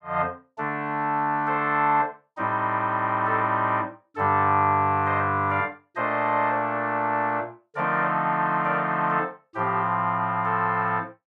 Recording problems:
none

